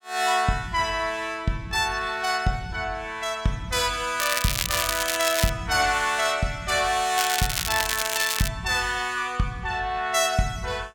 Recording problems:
crackling; from 4 to 5.5 s and from 7 to 8.5 s; loose cable, SNR 2 dB

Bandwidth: 17.5 kHz